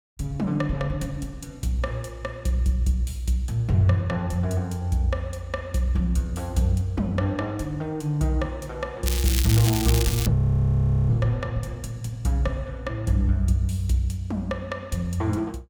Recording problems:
crackle; from 9 to 10 s; loose cable, SNR 4 dB
audio freezing; at 10 s for 1 s

